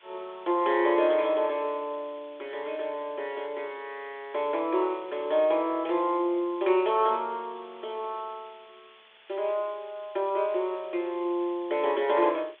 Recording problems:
phone line; 300 Hz to 3.6 kHz, G.726
hiss; SNR 26 dB

